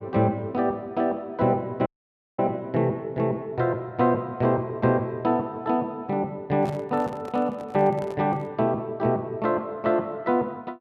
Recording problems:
dropout; at 2 s for 0.5 s
microphone handling noise; from 6.5 to 8.5 s; peak -6 dB vs average level

